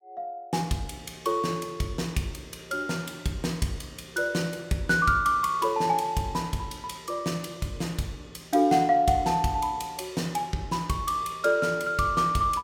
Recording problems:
none

